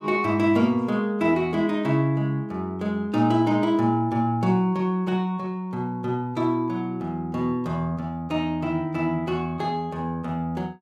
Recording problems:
none

